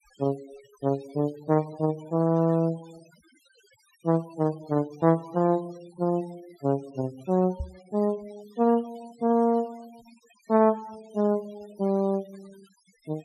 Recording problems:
noise reduction artefacts; signal-to-artefact ratio 26 dB
knock on the microphone; at 7.5 s; peak -3 dB vs average level

